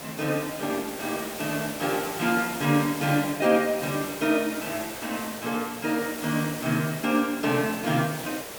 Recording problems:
hiss; slope -4 dB per octave, SNR 9 dB

